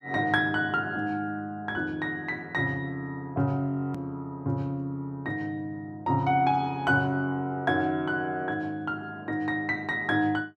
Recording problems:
edit click; at 4 s

